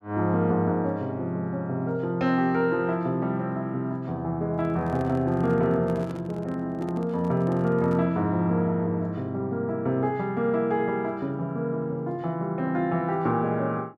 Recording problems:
handling noise; from 4.5 to 8 s; peak -9 dB vs average level

